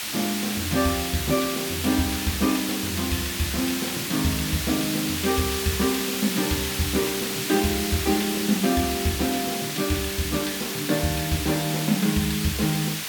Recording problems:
background hiss; slope +2 dB per octave, SNR 2 dB

